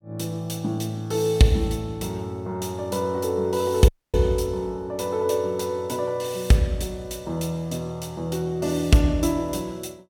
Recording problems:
dropout; at 4 s

